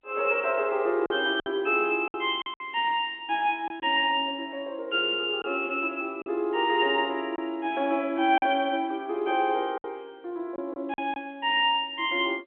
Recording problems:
phone line; 170 Hz to 3.5 kHz, G.711
packet loss; 5% of the sound replaced, filled with silence

